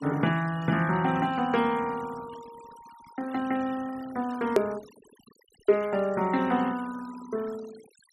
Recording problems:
noise reduction artefacts; signal-to-artefact ratio 20 dB
click at an edit; at 4.5 s

